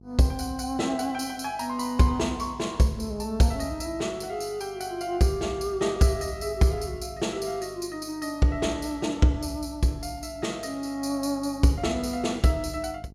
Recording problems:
hum; 50 Hz, harmonics up to 750 Hz, SNR 23 dB

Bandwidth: 16 kHz